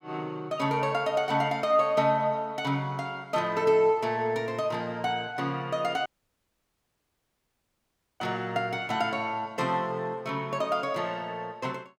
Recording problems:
audio cutting out; at 6 s for 2 s

